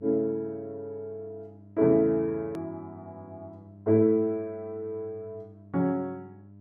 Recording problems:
electrical hum; 50 Hz, harmonics up to 700 Hz, SNR 22 dB
click at an edit; at 2.5 s

